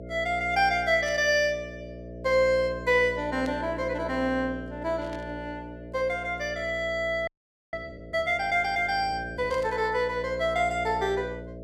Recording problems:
hum; 60 Hz, harmonics up to 660 Hz, SNR 13 dB
static burst; 4 times, first at 1 s; peak -14 dB vs average level
audio freezing; at 7.5 s

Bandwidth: 15 kHz